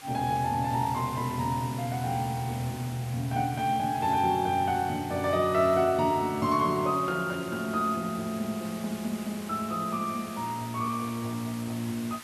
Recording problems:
hiss; SNR 15 dB

